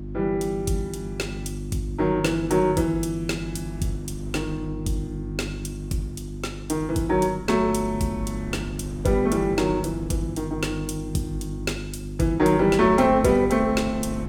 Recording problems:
electrical hum; 50 Hz, harmonics up to 350 Hz, SNR 9 dB
wind on the microphone; below 320 Hz, SNR 20 dB

